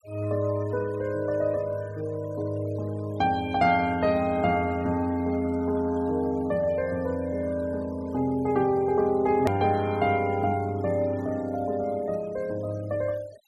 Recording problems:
denoising artefacts; signal-to-artefact ratio 23 dB
hard cut with a click; at 9.5 s

